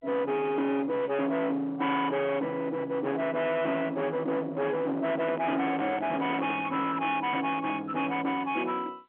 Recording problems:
telephone audio; 990 Hz to 2.2 kHz, G.711
distortion; hard clipping, uneven, signal-to-distortion ratio 8 dB
handling noise; from 5 to 6.5 s; peak -2 dB vs average level

